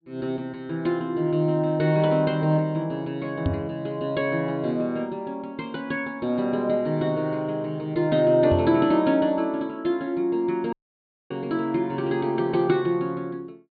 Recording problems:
treble cut off; nothing above 4.5 kHz
microphone thump; at 3.5 s and at 8.5 s; peak +3 dB vs average level
dropout; at 11 s for 0.5 s

